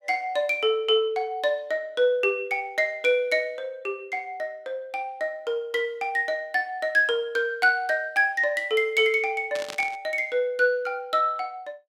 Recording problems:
static burst; at 9.5 s; peak -5 dB vs average level

